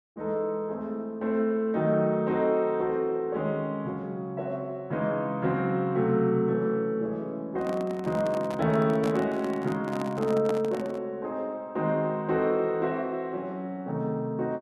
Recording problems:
microphone handling noise; from 7.5 to 11 s; peak -2 dB vs average level

